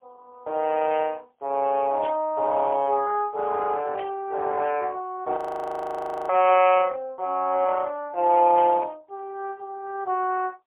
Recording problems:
telephone audio; 340 Hz to 3.1 kHz, AMR-NB, then MP3
static burst; 4 times, first at 2 s; peak -11 dB vs average level
audio freezing; at 5.5 s for 1 s

